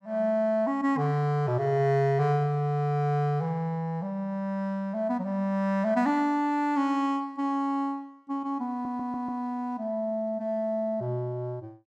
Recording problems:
stutter; at 8.5 s

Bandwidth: 15 kHz